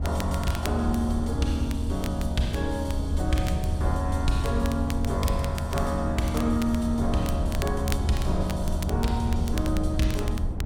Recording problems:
low-frequency rumble; below 88 Hz, SNR 1 dB
crackling; vinyl, SNR 13 dB

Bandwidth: 16.5 kHz